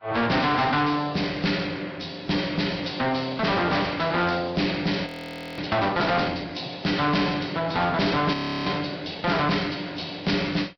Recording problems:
lossy codec; Vorbis, log-spectral distance 8 dB, nothing above 5.3 kHz
distorted audio; soft clipping, signal-to-distortion ratio 7 dB
audio freezing; at 5 s for 0.5 s and at 8.5 s

